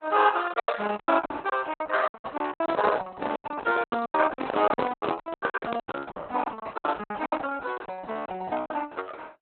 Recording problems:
codec artefacts; Opus, log-spectral distance 5 dB, nothing above 4 kHz
lost packets; 18% of the sound replaced, filled with silence
microphone handling noise; from 2.5 to 6 s; peak +8 dB vs average level

